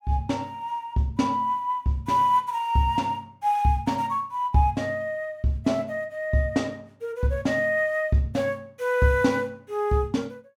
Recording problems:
none

